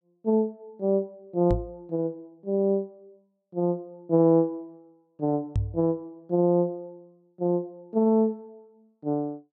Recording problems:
knock on the microphone; at 1.5 s and at 5.5 s; peak +3 dB vs average level

